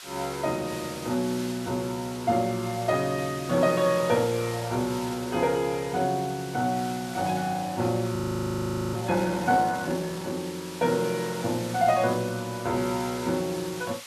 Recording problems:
background hiss; SNR 13 dB
audio freezing; at 8 s for 1 s

